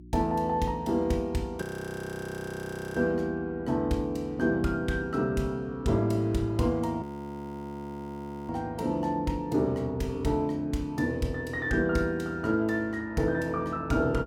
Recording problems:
hum; 60 Hz, harmonics up to 360 Hz, SNR 21 dB
audio freezing; at 1.5 s for 1.5 s and at 7 s for 1.5 s

